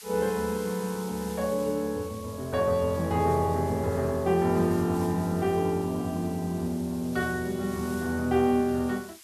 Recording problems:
background hiss; slope +3 dB per octave, SNR 18 dB

